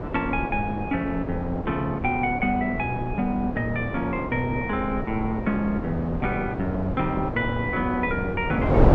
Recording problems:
wind noise; below 500 Hz, SNR 5 dB

